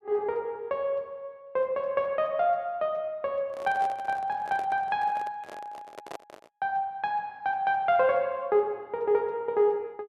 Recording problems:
handling noise; from 3.5 to 6.5 s; peak -6 dB vs average level

